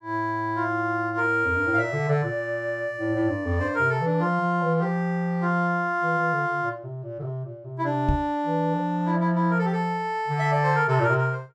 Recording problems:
microphone bump; at 8 s; peak +3 dB vs average level

